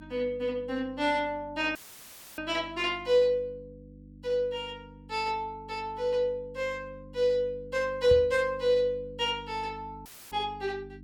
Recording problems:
electrical hum; 50 Hz, harmonics up to 300 Hz, SNR 20 dB
audio cutting out; at 2 s for 0.5 s and at 10 s
knock on the microphone; at 8 s; peak 0 dB vs average level

